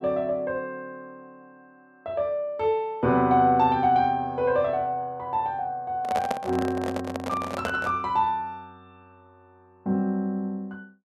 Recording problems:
handling noise; from 6 to 8 s; peak +1 dB vs average level

